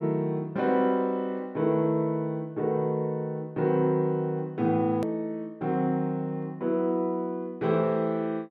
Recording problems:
click at an edit; at 5 s

